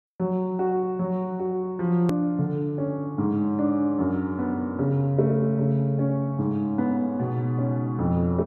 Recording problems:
click at an edit; at 2 s

